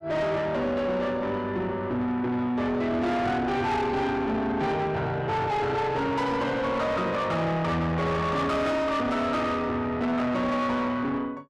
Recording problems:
distortion; soft clipping, signal-to-distortion ratio 7 dB

